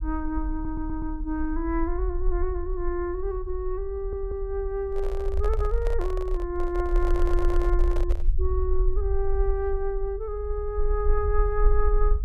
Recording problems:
low-frequency rumble; below 48 Hz, SNR 0 dB
audio stuttering; at 0.5 s, at 4 s and at 7 s
handling noise; from 5 to 8.5 s; peak -4 dB vs average level

